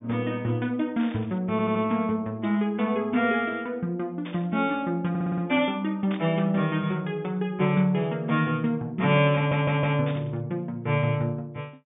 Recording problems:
low-pass filter; nothing above 3.7 kHz
burst of static; 4 times, first at 1 s; peak -9 dB vs average level
audio stuttering; at 1.5 s, at 5 s and at 9.5 s

